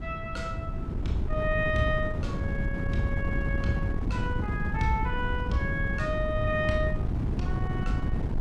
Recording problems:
wind noise; below 170 Hz, SNR -1 dB

